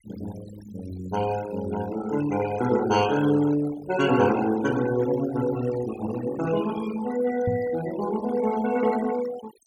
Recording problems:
denoising artefacts; signal-to-artefact ratio 14 dB
microphone bump; at 7.5 s; peak 0 dB vs average level

